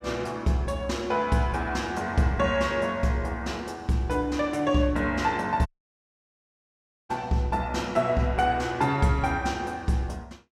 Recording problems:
dropout; at 5.5 s for 1.5 s

